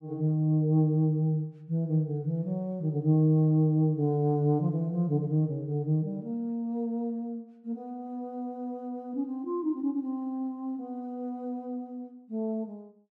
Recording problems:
none

